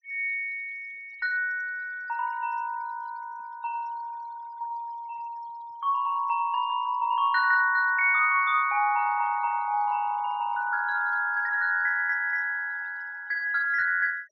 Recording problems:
treble cut off; nothing above 6 kHz
denoising artefacts; signal-to-artefact ratio 27 dB

